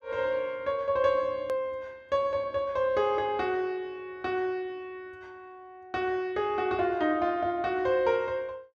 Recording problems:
hard cut with a click; at 1.5 s

